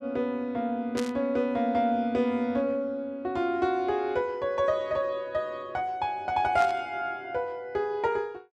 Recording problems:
static burst; at 1 s and at 6.5 s; peak -4 dB vs average level

